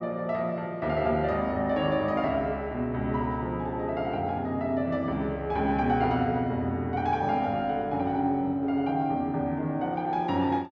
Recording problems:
none

